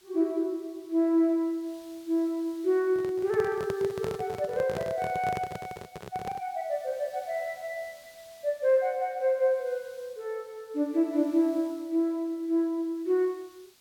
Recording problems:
background hiss; slope +1 dB per octave, SNR 27 dB
microphone handling noise; from 3 to 6.5 s; peak -2 dB vs average level

